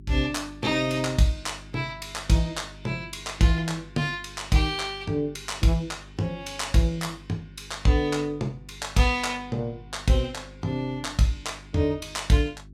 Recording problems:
hum; 50 Hz, harmonics up to 400 Hz, SNR 20 dB

